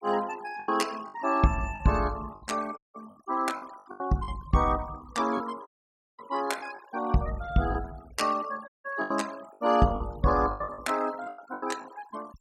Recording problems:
noise reduction artefacts; signal-to-artefact ratio 18 dB
packet loss; 10% of the sound replaced, filled with the last packet
dropout; at 3 s, at 5.5 s for 0.5 s and at 8.5 s

